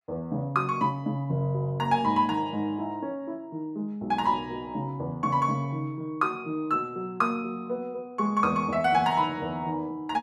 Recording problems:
none

